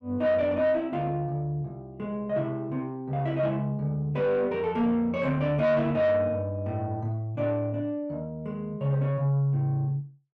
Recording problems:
distorted audio; soft clipping, signal-to-distortion ratio 10 dB

